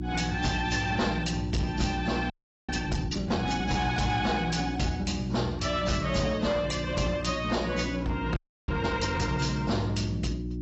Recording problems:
lossy codec; AAC, log-spectral distance 4 dB, nothing above 7.8 kHz
distorted audio; soft clipping, signal-to-distortion ratio 11 dB
hum; 60 Hz, harmonics up to 360 Hz, SNR 6 dB
frozen audio; at 2.5 s and at 8.5 s

